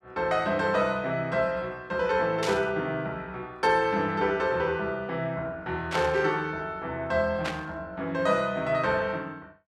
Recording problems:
burst of static; at 2.5 s, at 6 s and at 7.5 s; peak -1 dB vs average level

